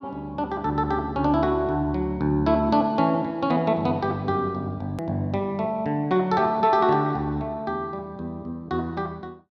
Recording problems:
edit click; at 5 s

